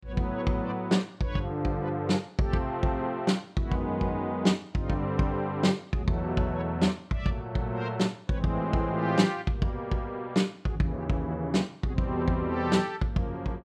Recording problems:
none

